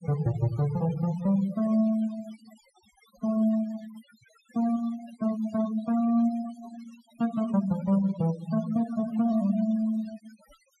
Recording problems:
denoising artefacts; signal-to-artefact ratio 17 dB

